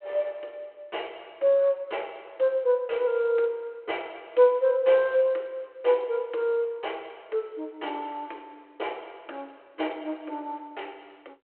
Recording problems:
telephone audio; 320 Hz to 3.3 kHz, G.726

